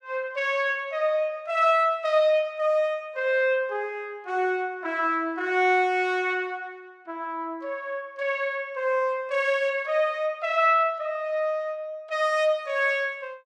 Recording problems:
none

